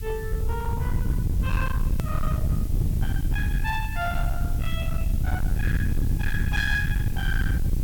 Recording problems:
distortion; hard clipping, signal-to-distortion ratio 7 dB
hiss; slope +4 dB per octave, SNR 13 dB
rumble; below 110 Hz, SNR -5 dB
hard cut with a click; at 2 s

